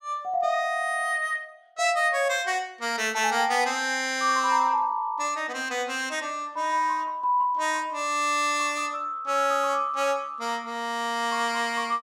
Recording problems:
none

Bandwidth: 16 kHz